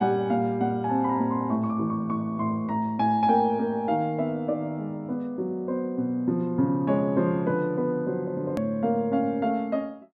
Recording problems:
edit click; at 8.5 s

